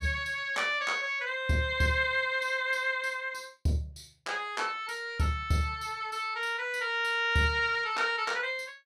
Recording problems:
none

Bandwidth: 15 kHz